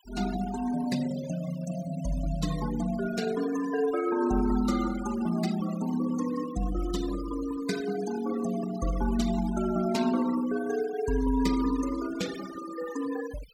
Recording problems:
noise reduction artefacts; signal-to-artefact ratio 13 dB

